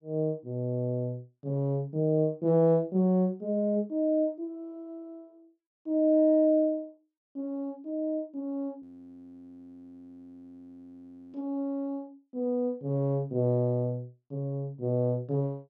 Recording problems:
audio freezing; at 9 s for 2.5 s

